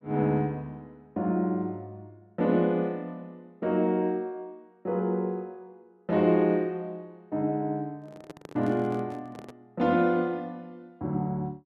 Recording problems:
handling noise; from 8 to 9.5 s; peak -10 dB vs average level

